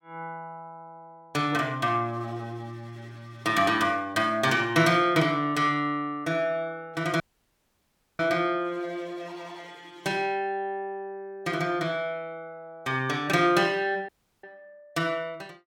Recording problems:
dropout; at 7 s for 1 s and at 14 s

